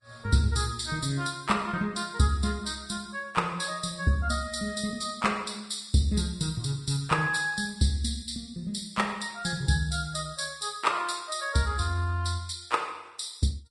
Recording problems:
codec artefacts; Vorbis, log-spectral distance 5 dB, nothing above 10.1 kHz

